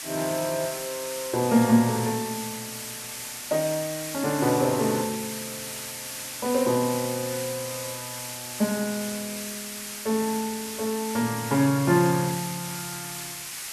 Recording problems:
background hiss; slope +2 dB per octave, SNR 7 dB

